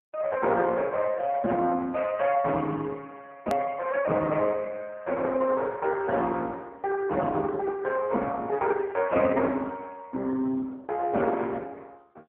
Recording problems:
telephone audio; 190 Hz to 3.2 kHz, AMR-NB
hard cut with a click; at 3.5 s

